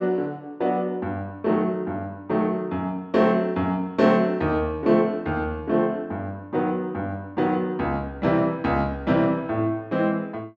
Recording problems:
none

